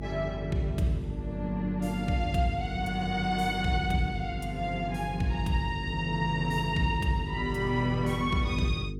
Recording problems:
mains hum; 50 Hz, harmonics up to 450 Hz, SNR 8 dB

